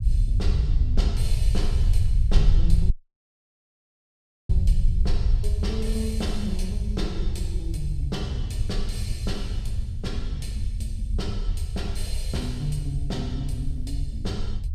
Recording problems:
low-frequency rumble; below 72 Hz, SNR -6 dB
audio cutting out; at 3 s for 1.5 s

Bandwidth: 15 kHz